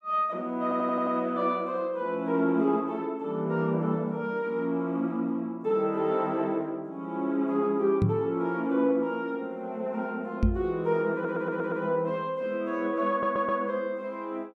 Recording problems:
stutter; at 0.5 s, at 11 s and at 13 s
microphone thump; at 8 s and at 10 s; peak +7 dB vs average level

